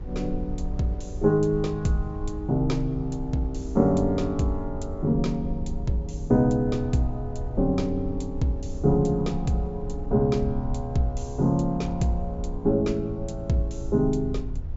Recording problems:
treble cut off; nothing above 8 kHz
low-frequency rumble; below 68 Hz, SNR 10 dB
wind on the microphone; below 340 Hz, SNR 23 dB

